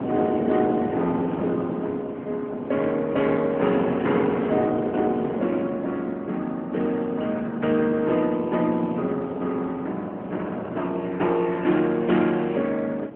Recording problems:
telephone audio; 190 Hz to 3.4 kHz, AMR-NB
wind noise; below 560 Hz, SNR 8 dB

